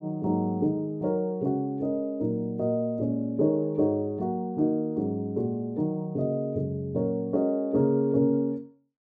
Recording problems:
none

